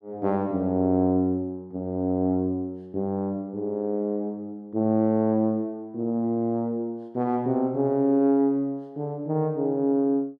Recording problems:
none

